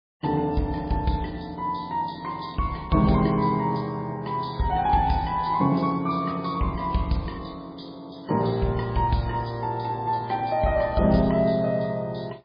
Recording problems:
lossy codec; MP3, log-spectral distance 3 dB, nothing above 4.5 kHz

